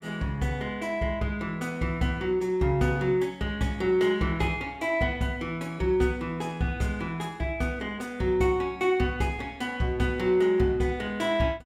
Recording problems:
none

